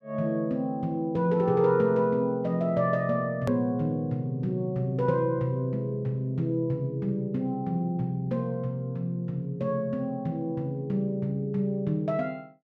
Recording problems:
edit click; at 3.5 s

